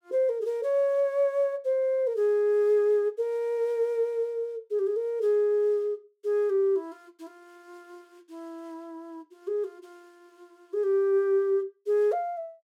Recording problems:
none

